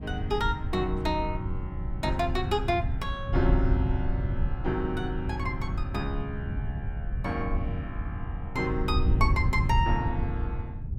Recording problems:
wind noise; below 100 Hz, SNR 0 dB

